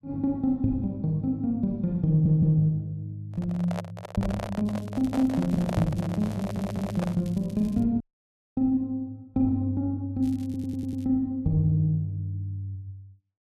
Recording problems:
stutter; at 2 s, at 6.5 s and at 10 s
handling noise; from 3.5 to 7 s; peak -3 dB vs average level
crackling; from 4.5 to 8 s and at 10 s; loose cable, SNR 27 dB
dropout; at 8 s for 0.5 s

